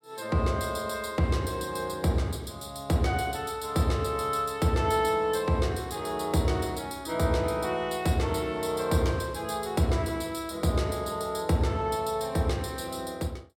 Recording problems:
none

